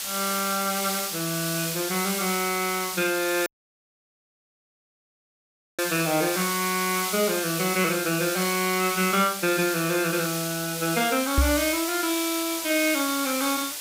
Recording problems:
background hiss; slope +3 dB per octave, SNR 3 dB
audio cutting out; at 3.5 s for 2.5 s
microphone thump; at 11 s; peak +7 dB vs average level

